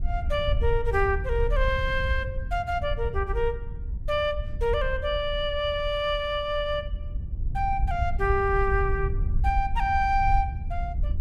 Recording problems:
wind on the microphone; below 74 Hz, SNR 4 dB

